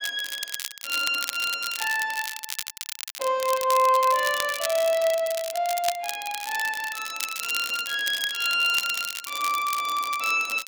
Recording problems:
crackling; vinyl, SNR 8 dB

